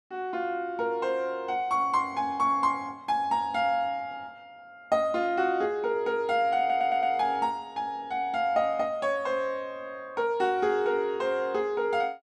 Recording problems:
stutter; at 6.5 s

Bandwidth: 13 kHz